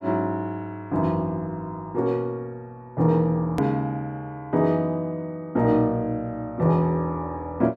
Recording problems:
hard cut with a click; at 3.5 s

